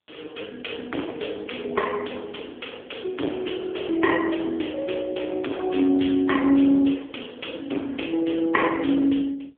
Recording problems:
telephone audio; 240 Hz to 3.2 kHz, AMR-NB
distorted audio; hard clipping, signal-to-distortion ratio 4 dB

